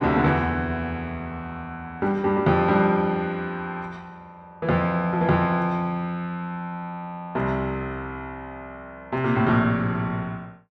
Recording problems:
none

